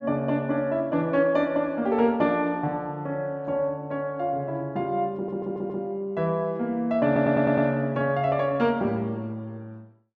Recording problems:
stutter; at 5 s and at 7 s

